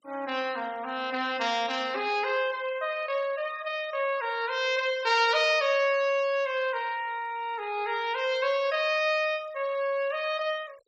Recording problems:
denoising artefacts; signal-to-artefact ratio 23 dB

